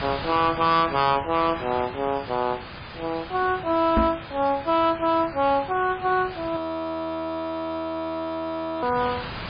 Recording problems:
codec artefacts; MP3, log-spectral distance 7 dB
distorted audio; hard clipping, signal-to-distortion ratio 12 dB
hiss; SNR 13 dB
microphone thump; at 4 s; peak +4 dB vs average level
audio freezing; at 6.5 s for 2.5 s

